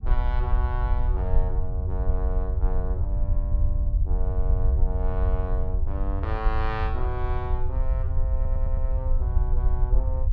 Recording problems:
low-frequency rumble; below 66 Hz, SNR -9 dB
audio stuttering; at 8.5 s

